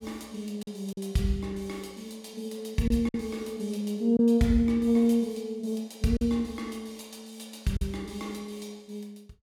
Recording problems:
lost packets; 3% of the sound replaced, filled with silence

